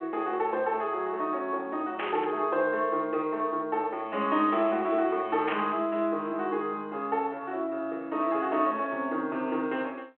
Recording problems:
phone line; 240 Hz to 3.4 kHz, G.726
burst of static; at 2 s and at 5.5 s; peak 0 dB vs average level

